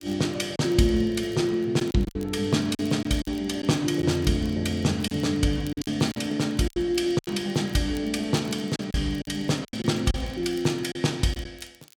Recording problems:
crackle; vinyl, SNR 26 dB
packet loss; 8% of the sound replaced, filled with silence

